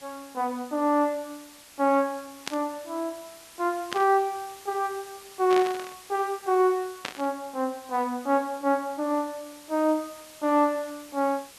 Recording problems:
background hiss; slope 0 dB per octave, SNR 20 dB
burst of static; 4 times, first at 2.5 s; peak -1 dB vs average level

